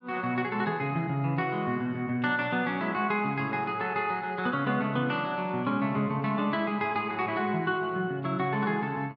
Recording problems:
treble cut off; nothing above 6.5 kHz

